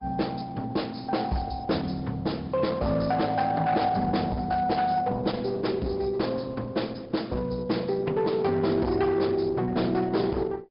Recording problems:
treble missing; nothing above 5.2 kHz
lossy compression; Opus, log-spectral distance 4 dB
distortion; hard clipping, signal-to-distortion ratio 10 dB

